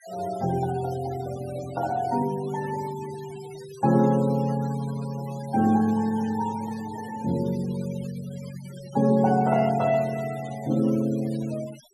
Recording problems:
noise reduction artefacts; signal-to-artefact ratio 19 dB

